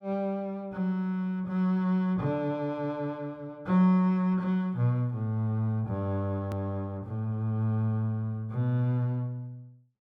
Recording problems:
click at an edit; at 6.5 s

